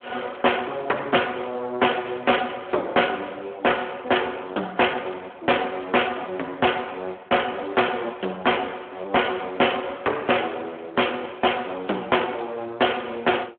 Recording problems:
telephone audio; 300 Hz to 3.3 kHz, Speex
distorted audio; hard clipping, uneven, signal-to-distortion ratio 14 dB
crackling; at 9 s; loose cable, SNR 25 dB

